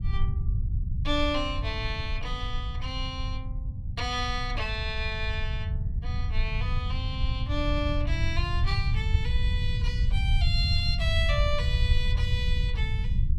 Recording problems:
rumble; below 92 Hz, SNR -2 dB

